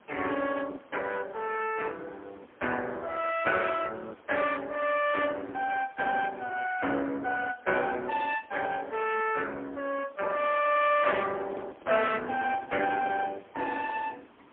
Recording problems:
phone line; 220 Hz to 3.5 kHz, AMR-NB, then MP3
hiss; SNR 27 dB
microphone handling noise; from 11 to 13 s; peak -9 dB vs average level

